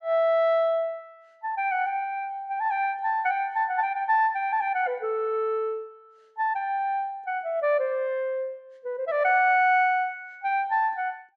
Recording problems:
none

